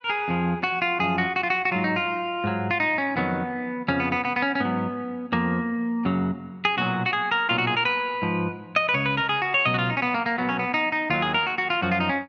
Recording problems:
none

